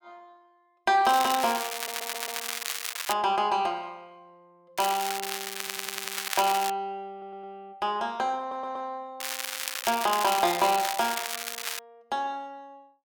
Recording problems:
crackle; from 1 to 3 s, from 5 to 6.5 s and from 9 to 12 s; loose cable, SNR 4 dB
stutter; 4 times, first at 1.5 s

